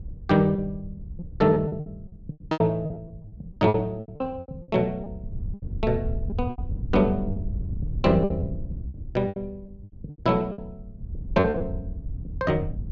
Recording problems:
wind on the microphone; below 100 Hz, SNR 10 dB
packet loss; 14% of the sound replaced, filled with repeated pitch periods

